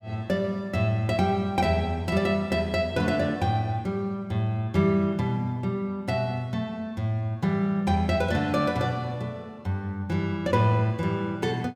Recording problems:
none

